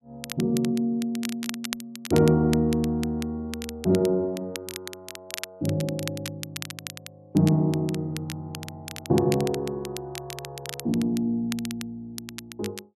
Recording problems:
crackle; vinyl, SNR 12 dB

